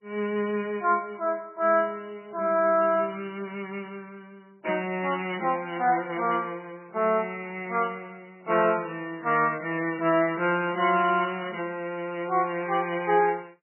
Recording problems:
lossy compression; MP3, log-spectral distance 3 dB, nothing above 2.9 kHz

